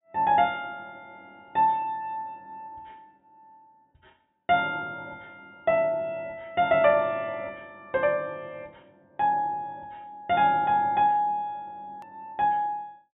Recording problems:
treble missing; nothing above 4 kHz
hard cut with a click; at 12 s

